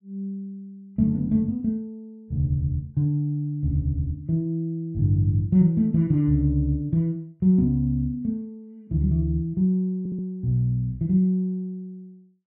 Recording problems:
audio stuttering; at 10 s

